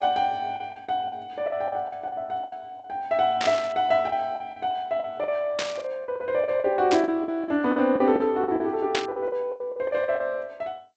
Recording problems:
lossy codec; MP2, then G.722, log-spectral distance 2 dB
packet loss; 14% of the sound replaced, filled with the last packet
static burst; 4 times, first at 3.5 s; peak +3 dB vs average level

